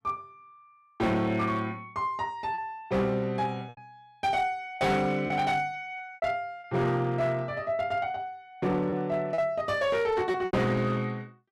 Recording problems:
distortion; hard clipping, uneven, signal-to-distortion ratio 11 dB
lost packets; 5% of the sound replaced, filled with repeated pitch periods

